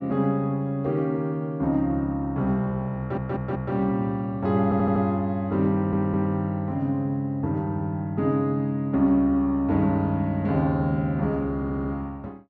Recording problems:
stutter; 4 times, first at 3 s

